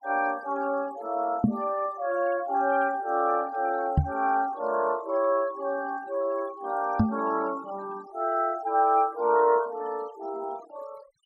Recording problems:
denoising artefacts; signal-to-artefact ratio 20 dB
knock on the microphone; at 1.5 s, at 4 s and at 7 s; peak +8 dB vs average level

